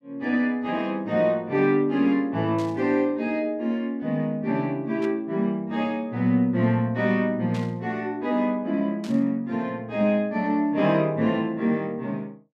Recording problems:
static burst; 4 times, first at 2.5 s; peak -11 dB vs average level

